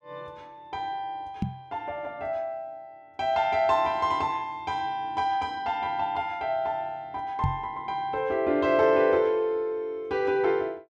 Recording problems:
knock on the microphone; at 1.5 s and at 7.5 s; peak +3 dB vs average level

